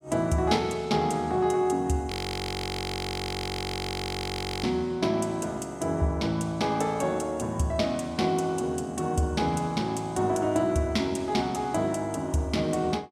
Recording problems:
frozen audio; at 2 s for 2.5 s

